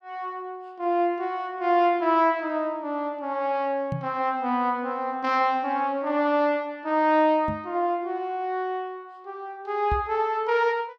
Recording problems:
microphone bump; at 4 s, at 7.5 s and at 10 s; peak -1 dB vs average level

